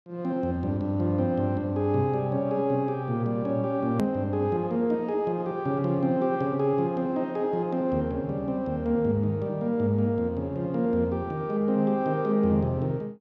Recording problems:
click at an edit; at 4 s

